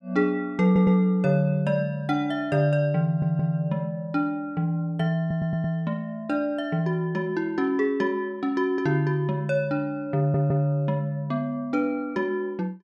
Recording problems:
audio stuttering; 4 times, first at 0.5 s

